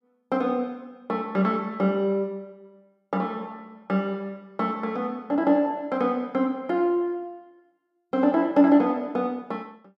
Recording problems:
none

